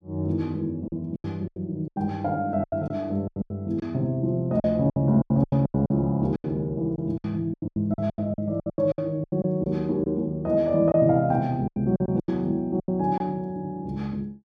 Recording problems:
packet loss; 15% of the sound replaced, filled with silence

